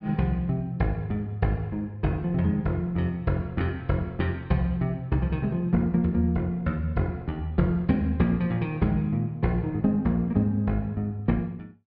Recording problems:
treble missing; nothing above 5.5 kHz

